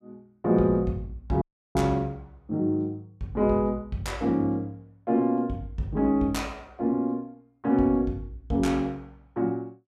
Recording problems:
audio cutting out; at 1.5 s

